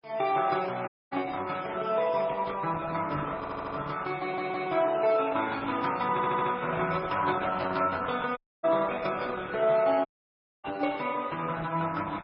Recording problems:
lossy compression; Opus, then MP3, log-spectral distance 4 dB, nothing above 5.2 kHz
dropout; at 1 s, at 8.5 s and at 10 s for 0.5 s
audio stuttering; at 3.5 s, at 4 s and at 6 s

